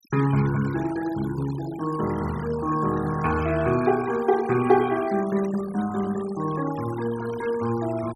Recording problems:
noise reduction artefacts; signal-to-artefact ratio 16 dB

